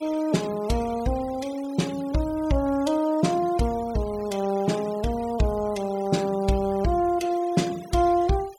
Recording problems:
denoising artefacts; signal-to-artefact ratio 20 dB

